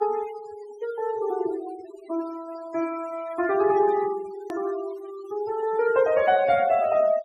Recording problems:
denoising artefacts; signal-to-artefact ratio 18 dB
click at an edit; at 4.5 s

